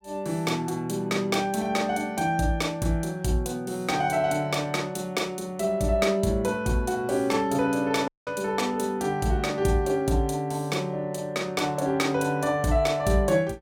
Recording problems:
audio cutting out; at 8 s

